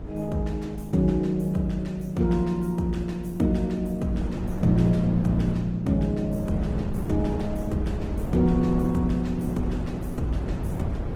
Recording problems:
codec artefacts; Opus, log-spectral distance 2 dB, nothing above 19 kHz
hum; 60 Hz, harmonics up to 720 Hz, SNR 25 dB
wind on the microphone; below 270 Hz, SNR 7 dB

